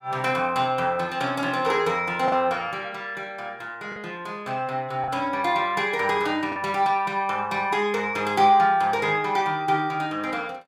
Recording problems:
lost packets; 1.5% of the sound replaced, filled with the last packet

